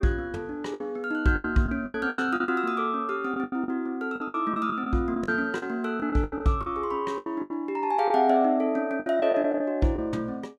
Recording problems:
lost packets; 13% of the sound replaced, filled with the last packet

